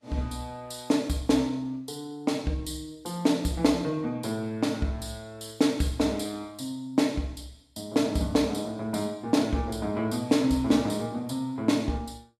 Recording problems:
lossy codec; Vorbis, log-spectral distance 3 dB, nothing above 13.8 kHz

